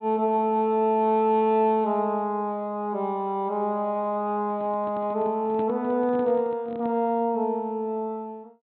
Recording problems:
treble cut off; nothing above 4.1 kHz
handling noise; from 4.5 to 7 s; peak -9 dB vs average level

